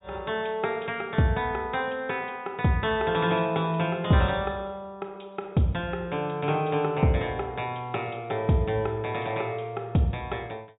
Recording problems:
treble missing; nothing above 4 kHz

